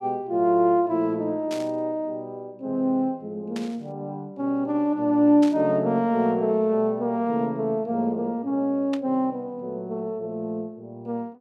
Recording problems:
static burst; 4 times, first at 1.5 s; peak -9 dB vs average level

